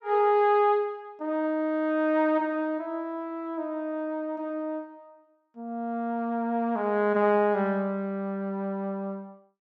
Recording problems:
none

